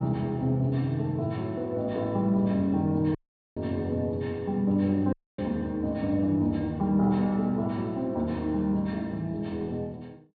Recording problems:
low-pass filter; nothing above 4.5 kHz
dropout; at 3 s and at 5 s

